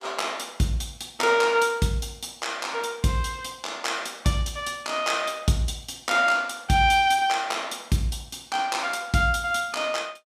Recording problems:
none

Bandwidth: 14.5 kHz